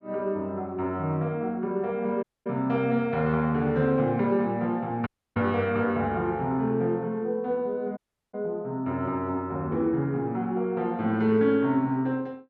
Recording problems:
dropout; at 2 s, at 5 s and at 8 s

